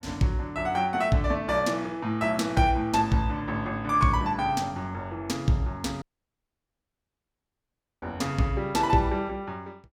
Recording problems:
audio cutting out; at 6 s for 2 s

